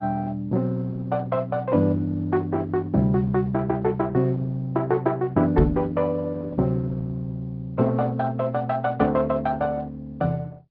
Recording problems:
treble cut off; nothing above 5.5 kHz
lossy compression; Opus, log-spectral distance 2 dB
knock on the microphone; at 5.5 s; peak +7 dB vs average level

